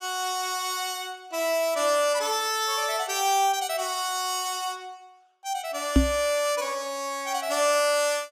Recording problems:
knock on the microphone; at 6 s; peak +9 dB vs average level

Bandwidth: 15 kHz